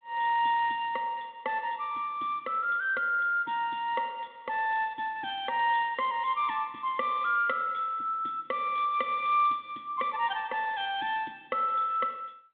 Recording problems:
telephone audio; 220 Hz to 3.5 kHz, G.726

